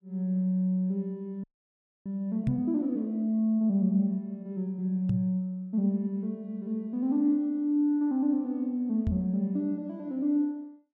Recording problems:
frozen audio; at 1.5 s for 0.5 s
microphone bump; at 2.5 s, at 5 s and at 9 s; peak +3 dB vs average level

